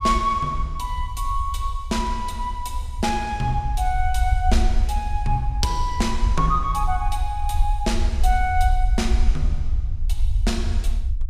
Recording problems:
low-frequency rumble; below 60 Hz, SNR 0 dB

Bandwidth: 15.5 kHz